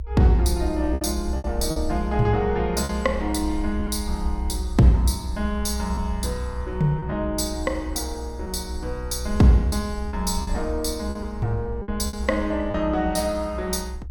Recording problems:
low-frequency rumble; below 66 Hz, strongest tone 62 Hz, SNR 7 dB
lost packets; 5% of the sound replaced, filled with repeated pitch periods

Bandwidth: 17.5 kHz